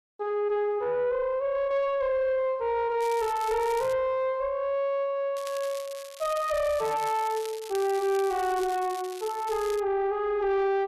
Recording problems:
distortion; soft clipping, signal-to-distortion ratio 12 dB
crackle; at 3 s and from 5.5 to 10 s; loose cable, SNR 17 dB

